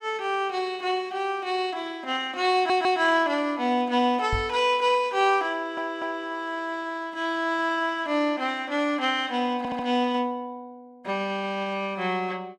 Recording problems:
audio stuttering; at 2.5 s, at 5.5 s and at 9.5 s
microphone bump; at 4.5 s; peak -1 dB vs average level

